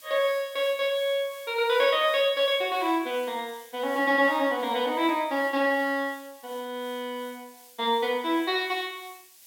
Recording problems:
background hiss; SNR 23 dB

